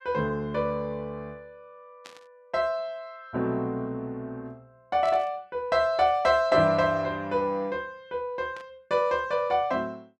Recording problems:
static burst; at 2 s, at 5 s and at 8.5 s; peak -14 dB vs average level

